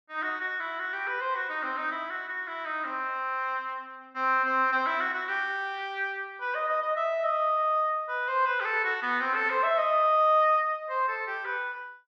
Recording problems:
none

